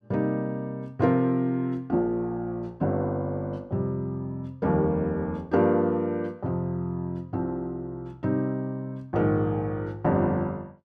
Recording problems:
none

